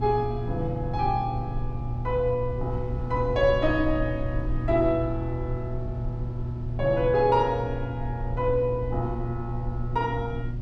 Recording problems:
hum; 60 Hz, harmonics up to 360 Hz, SNR 6 dB
low-frequency rumble; below 76 Hz, SNR 9 dB

